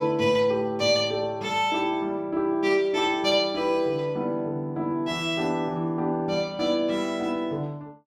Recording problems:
none

